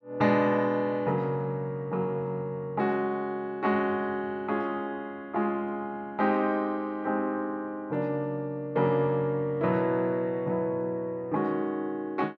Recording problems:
none

